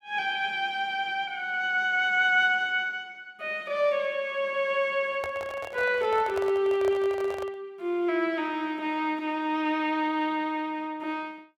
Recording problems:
microphone handling noise; from 5 to 7.5 s; peak -5 dB vs average level

